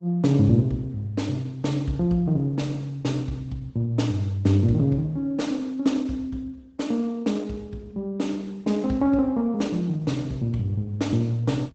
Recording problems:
lossy codec; Opus, log-spectral distance 2 dB, nothing above 8 kHz

